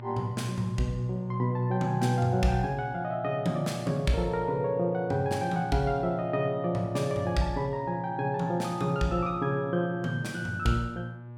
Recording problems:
electrical hum; 60 Hz, harmonics up to 1.2 kHz, SNR 14 dB

